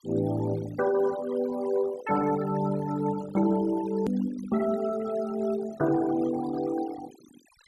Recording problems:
denoising artefacts; signal-to-artefact ratio 16 dB
edit click; at 4 s

